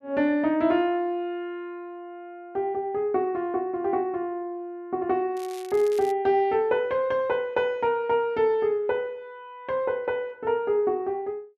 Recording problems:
crackling; at 5.5 s; loose cable, SNR 20 dB

